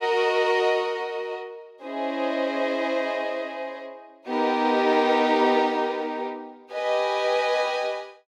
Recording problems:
none

